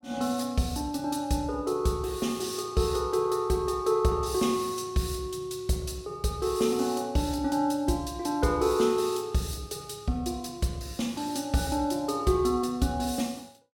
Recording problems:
none

